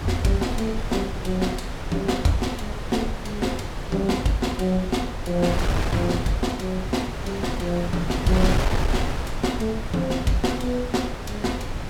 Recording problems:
wind noise; below 480 Hz, SNR 4 dB

